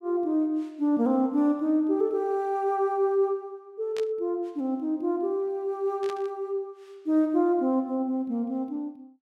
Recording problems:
burst of static; at 4 s and at 6 s; peak -10 dB vs average level

